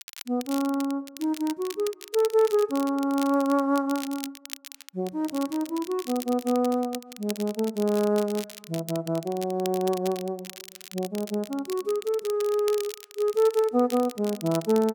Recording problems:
crackle; vinyl, SNR 15 dB

